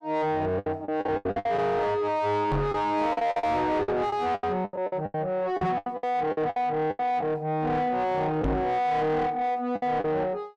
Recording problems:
distorted audio; soft clipping, signal-to-distortion ratio 8 dB
lost packets; 13% of the sound replaced, filled with the last packet
knock on the microphone; at 2.5 s, at 5.5 s and at 8.5 s; peak +6 dB vs average level

